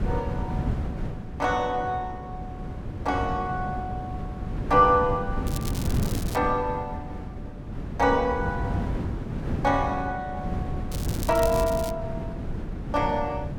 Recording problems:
wind noise; below 220 Hz, SNR 6 dB
crackle; at 5.5 s and at 11 s; loose cable, SNR 12 dB

